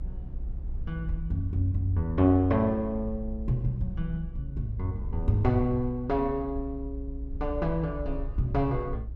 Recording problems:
low-frequency rumble; below 60 Hz, SNR 9 dB

